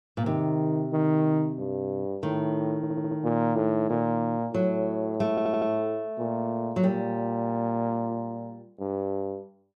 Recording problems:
stutter; at 3 s and at 5.5 s

